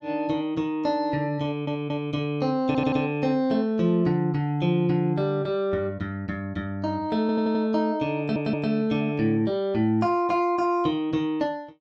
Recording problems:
audio stuttering; 4 times, first at 1.5 s

